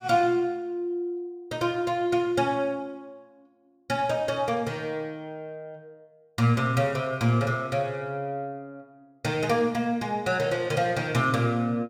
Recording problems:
none

